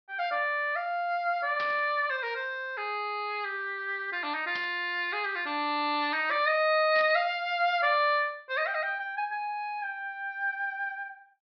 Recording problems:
low-pass filter; nothing above 5.5 kHz
burst of static; at 1.5 s, at 4.5 s and at 7 s; peak -7 dB vs average level

